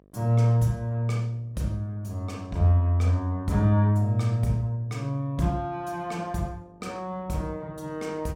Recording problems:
electrical hum; 50 Hz, harmonics up to 1.3 kHz, SNR 31 dB

